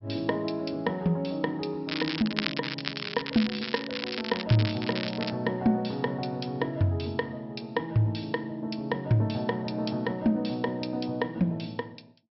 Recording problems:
treble missing; nothing above 5.5 kHz
crackle; from 2 to 5.5 s; loose cable, SNR 5 dB

